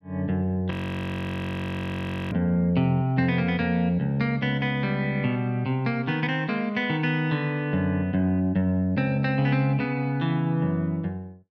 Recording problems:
frozen audio; at 0.5 s for 1.5 s

